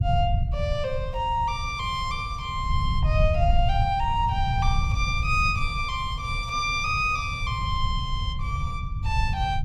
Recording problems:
rumble; below 100 Hz, SNR 2 dB

